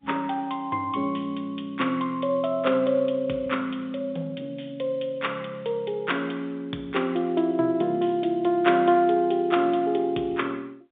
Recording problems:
telephone audio; 220 Hz to 3.7 kHz, G.711

